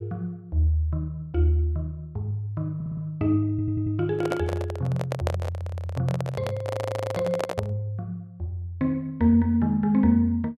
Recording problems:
audio stuttering; 4 times, first at 3 s
handling noise; from 4 to 7.5 s; peak +2 dB vs average level

